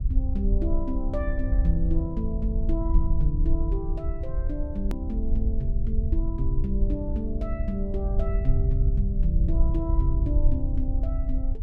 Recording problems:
low-frequency rumble; below 60 Hz, SNR -5 dB
click at an edit; at 5 s

